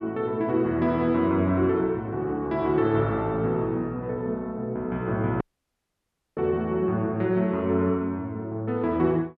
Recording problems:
audio cutting out; at 5.5 s for 1 s

